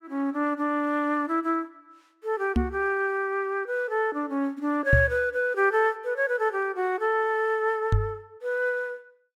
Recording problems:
knock on the microphone; at 2.5 s, at 5 s and at 8 s; peak +8 dB vs average level

